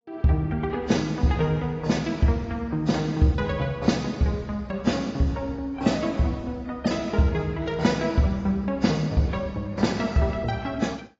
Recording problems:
lossy codec; AAC, then AAC, log-spectral distance 3 dB, nothing above 16.6 kHz

